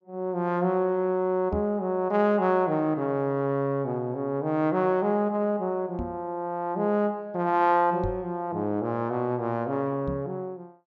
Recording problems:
treble cut off; nothing above 8 kHz
microphone bump; 4 times, first at 1.5 s; peak -3 dB vs average level

